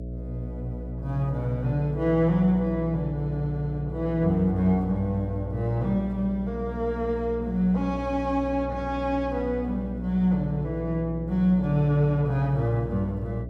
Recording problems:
hum; 60 Hz, harmonics up to 660 Hz, SNR 10 dB

